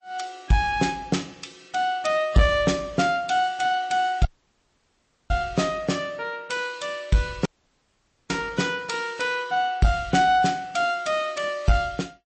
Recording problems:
codec artefacts; MP3, log-spectral distance 3 dB, nothing above 8 kHz
distortion; soft clipping, signal-to-distortion ratio 12 dB
dropout; at 4.5 s for 1 s and at 7.5 s for 1 s

